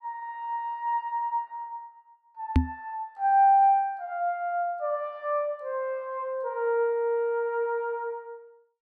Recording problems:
knock on the microphone; at 2.5 s; peak +9 dB vs average level

